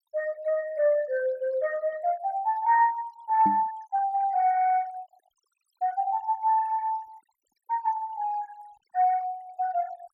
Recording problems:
noise reduction artefacts; signal-to-artefact ratio 24 dB
microphone thump; at 3.5 s; peak -2 dB vs average level

